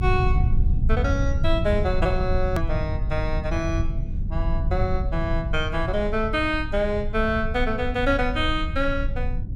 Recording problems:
rumble; below 90 Hz, strongest tone 22 Hz, SNR 1 dB
edit click; at 2.5 s

